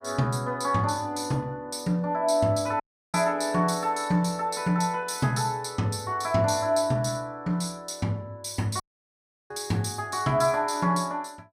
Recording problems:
dropout; at 3 s and at 9 s for 0.5 s

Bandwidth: 15.5 kHz